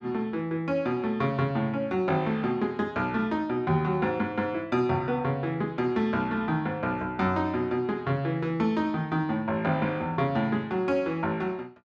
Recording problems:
none

